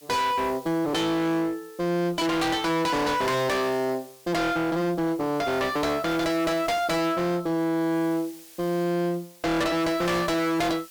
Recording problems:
distortion; hard clipping, uneven, signal-to-distortion ratio 5 dB
hiss; slope +3 dB per octave, SNR 23 dB

